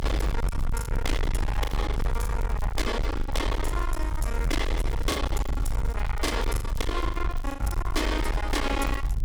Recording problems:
distorted audio; hard clipping, uneven, signal-to-distortion ratio 5 dB
low-frequency rumble; below 68 Hz, SNR 0 dB
crackle; vinyl, SNR 21 dB
lost packets; 9% of the sound replaced, filled with the last packet

